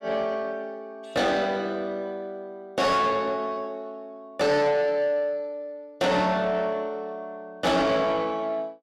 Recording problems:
distorted audio; soft clipping, signal-to-distortion ratio 10 dB

